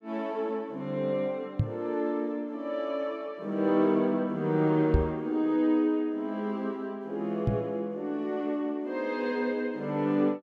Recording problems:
microphone thump; at 1.5 s, at 5 s and at 7.5 s; peak +8 dB vs average level

